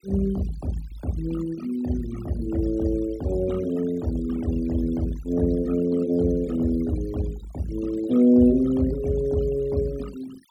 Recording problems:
denoising artefacts; signal-to-artefact ratio 20 dB

